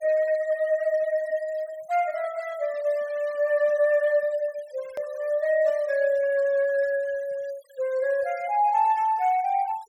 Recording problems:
noise reduction artefacts; signal-to-artefact ratio 24 dB
click at an edit; at 5 s

